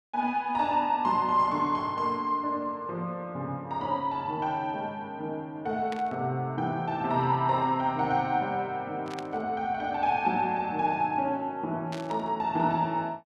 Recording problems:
static burst; at 6 s, at 9 s and at 12 s; peak -8 dB vs average level

